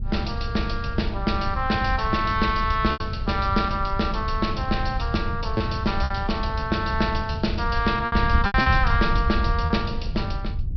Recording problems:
treble missing; nothing above 5.5 kHz
wind noise; below 92 Hz, SNR 4 dB
lost packets; 4% of the sound replaced, filled with repeated pitch periods

